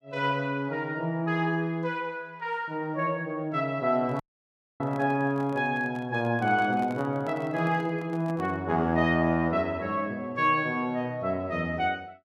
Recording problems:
handling noise; from 4 to 8.5 s; peak -10 dB vs average level
audio cutting out; at 4 s for 0.5 s

